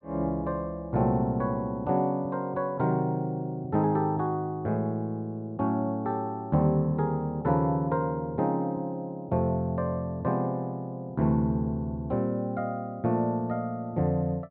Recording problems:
none

